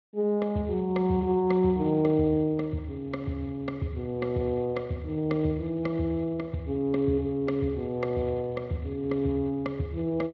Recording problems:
codec artefacts; Speex, log-spectral distance 2 dB

